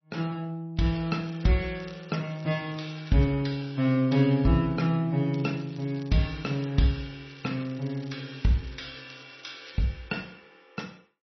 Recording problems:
lossy codec; MP3, log-spectral distance 5 dB, nothing above 5.8 kHz
crackling; from 1 to 3.5 s, from 5.5 to 6.5 s and from 7.5 to 10 s; loose cable, SNR 25 dB

